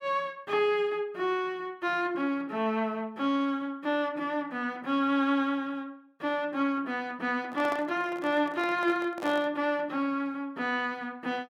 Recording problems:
handling noise; from 7.5 to 9.5 s; peak -5 dB vs average level

